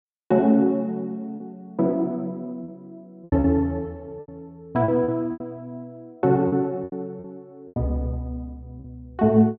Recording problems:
lost packets; 8% of the sound replaced, filled with repeated pitch periods

